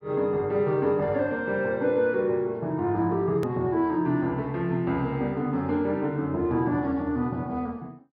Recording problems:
treble cut off; nothing above 5.1 kHz
click at an edit; at 3.5 s

